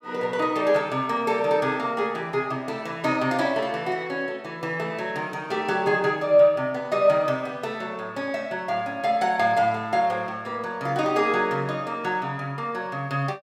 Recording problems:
none

